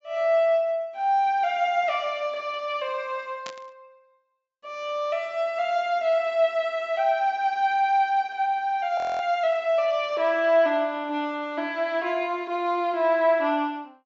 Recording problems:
treble cut off; nothing above 8 kHz
burst of static; at 3.5 s; peak -9 dB vs average level
frozen audio; at 9 s

